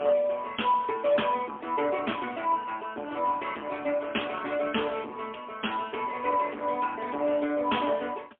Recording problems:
phone line; 260 Hz to 3.4 kHz, AMR-NB, then MP3
distorted audio; soft clipping, signal-to-distortion ratio 10 dB

